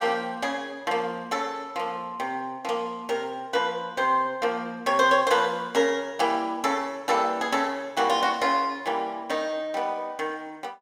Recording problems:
none

